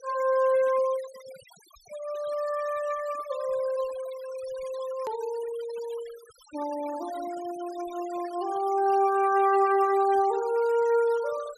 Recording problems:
denoising artefacts; signal-to-artefact ratio 20 dB
hard cut with a click; at 5 s

